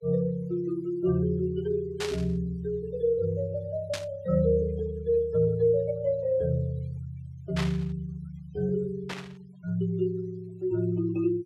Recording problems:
noise reduction artefacts; signal-to-artefact ratio 27 dB
static burst; 4 times, first at 2 s; peak -1 dB vs average level

